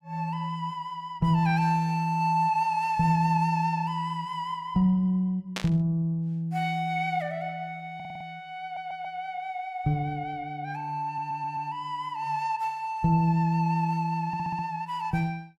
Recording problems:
static burst; at 5.5 s; peak 0 dB vs average level
audio stuttering; 4 times, first at 8 s

